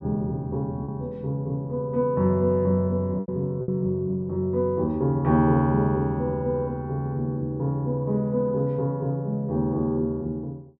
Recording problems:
packet loss; 1.7% of the sound replaced, filled with repeated pitch periods

